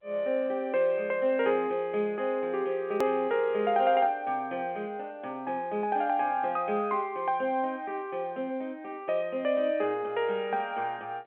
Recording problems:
telephone audio; 240 Hz to 3.3 kHz, G.711
click at an edit; at 3 s

